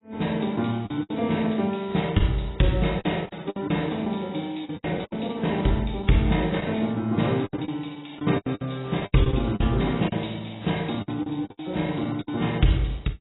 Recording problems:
lossy compression; AAC, log-spectral distance 8 dB, nothing above 3.8 kHz
lost packets; 11% of the sound replaced, filled with the last packet

